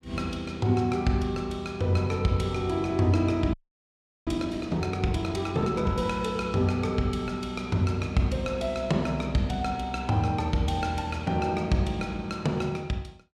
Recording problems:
frozen audio; at 3.5 s for 0.5 s

